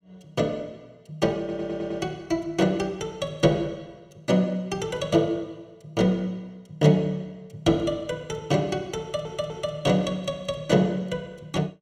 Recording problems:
audio stuttering; at 1.5 s and at 9 s

